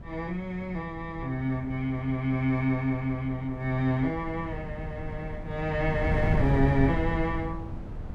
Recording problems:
wind on the microphone; below 160 Hz, SNR 6 dB

